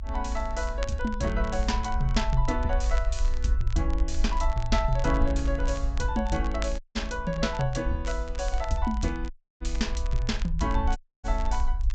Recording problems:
low-pass filter; nothing above 8 kHz
rumble; below 54 Hz, SNR 1 dB
crackling; vinyl, SNR 17 dB
audio cutting out; at 7 s, at 9.5 s and at 11 s

